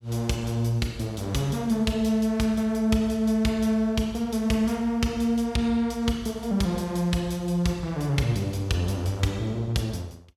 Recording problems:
none

